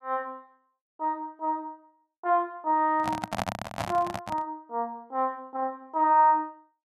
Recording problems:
handling noise; from 3 to 4.5 s; peak +1 dB vs average level

